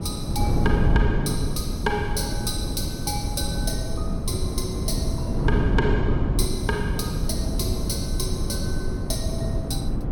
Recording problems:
wind noise; below 190 Hz, SNR -4 dB

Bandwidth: 17 kHz